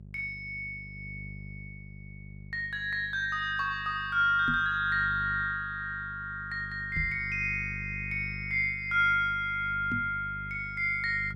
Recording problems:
electrical hum; 50 Hz, harmonics up to 400 Hz, SNR 15 dB
microphone thump; at 4.5 s, at 7 s and at 10 s; peak -3 dB vs average level

